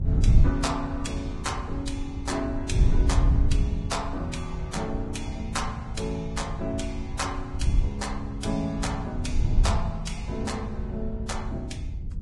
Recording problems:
lossy codec; Vorbis, log-spectral distance 2 dB, nothing above 10.7 kHz
wind noise; below 98 Hz, SNR -2 dB

